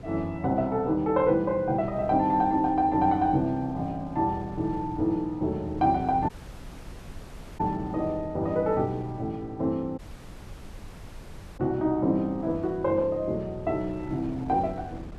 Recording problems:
wind on the microphone; below 310 Hz, SNR 18 dB
dropout; at 6.5 s for 1.5 s and at 10 s for 1.5 s

